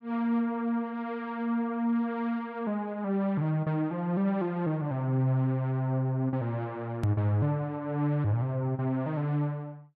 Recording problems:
edit click; at 7 s

